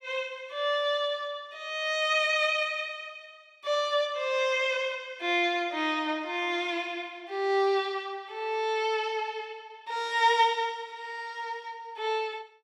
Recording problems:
none

